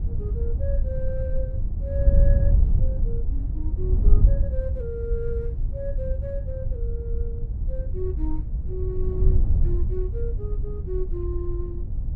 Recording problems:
wind noise; below 72 Hz, SNR -10 dB

